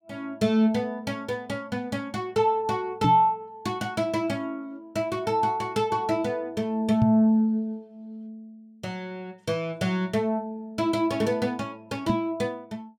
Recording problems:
knock on the microphone; at 3 s, at 7 s and at 12 s; peak +6 dB vs average level

